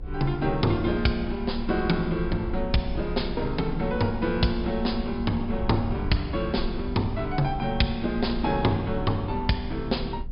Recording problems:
low-pass filter; nothing above 5.5 kHz
low-frequency rumble; below 62 Hz, strongest tone 22 Hz, SNR 10 dB

